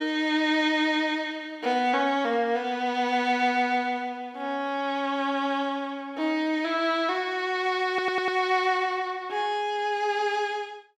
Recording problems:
stutter; at 8 s

